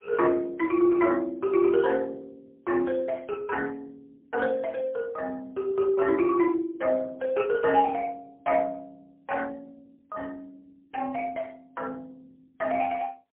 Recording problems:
phone line; 300 Hz to 3.4 kHz, AMR-NB, then MP3

